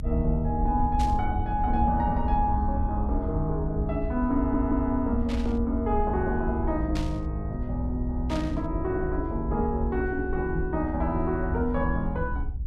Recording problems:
rumble; below 70 Hz, SNR 4 dB
burst of static; 4 times, first at 1 s; peak -6 dB vs average level
audio stuttering; at 4.5 s

